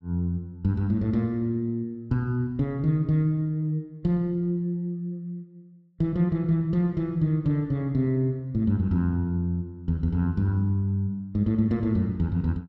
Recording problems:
none

